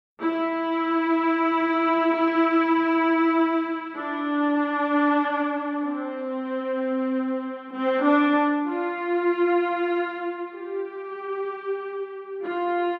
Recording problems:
none

